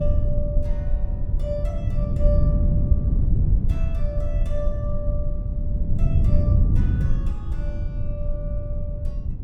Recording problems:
low-frequency rumble; below 52 Hz, strongest tone 22 Hz, SNR -6 dB
wind noise; below 120 Hz, SNR -12 dB

